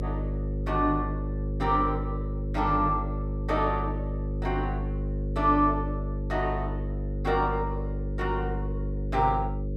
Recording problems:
mains hum; 50 Hz, harmonics up to 550 Hz, SNR 3 dB

